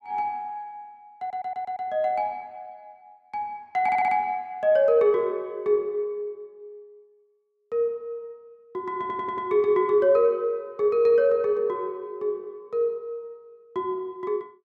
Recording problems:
audio stuttering; at 1 s, at 4 s and at 9 s

